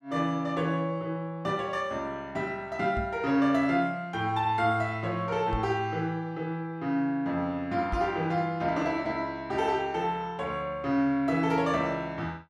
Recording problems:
knock on the microphone; at 3 s, at 5.5 s and at 8 s; peak -1 dB vs average level

